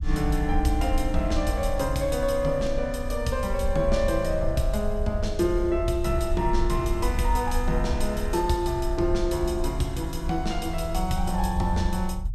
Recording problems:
low-frequency rumble; below 62 Hz, SNR 4 dB

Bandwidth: 15.5 kHz